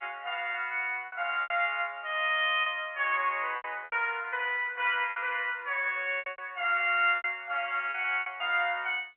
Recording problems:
telephone audio; 320 Hz to 3.2 kHz, G.711
lost packets; 9% of the sound replaced, filled with repeated pitch periods

